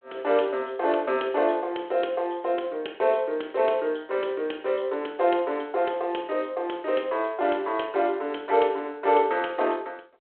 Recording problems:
telephone audio; 320 Hz to 3.3 kHz, G.726

